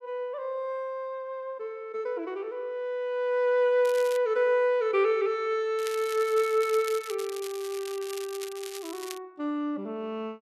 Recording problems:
crackling; at 4 s and from 6 to 9 s; loose cable, SNR 14 dB

